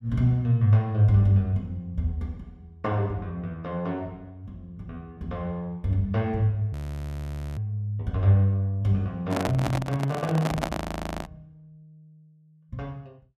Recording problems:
frozen audio; at 6.5 s for 1 s and at 11 s
handling noise; from 9.5 to 11 s; peak +2 dB vs average level

